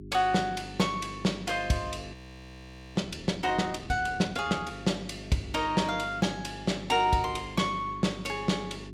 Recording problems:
mains hum; 50 Hz, harmonics up to 450 Hz, SNR 15 dB
frozen audio; at 2 s for 1 s

